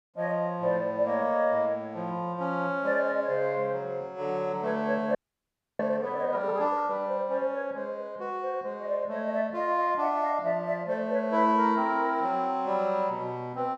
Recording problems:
audio freezing; at 5 s for 0.5 s

